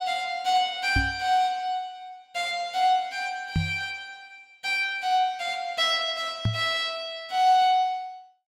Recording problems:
knock on the microphone; at 1 s, at 3.5 s and at 6.5 s; peak +3 dB vs average level

